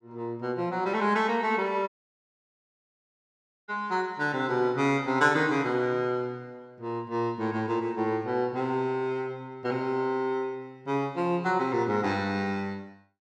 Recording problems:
audio cutting out; at 2 s for 2 s

